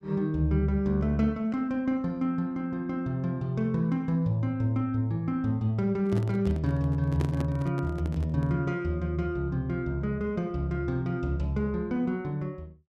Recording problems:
handling noise; from 6 to 8.5 s; peak 0 dB vs average level

